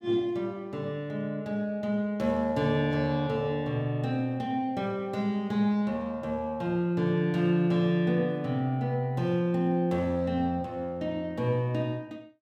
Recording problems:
none

